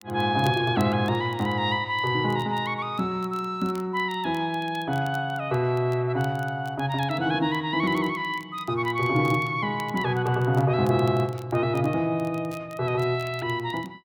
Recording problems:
crackling; vinyl, SNR 26 dB

